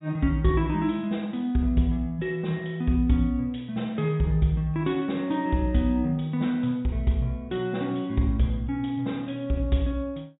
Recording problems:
treble cut off; nothing above 4 kHz

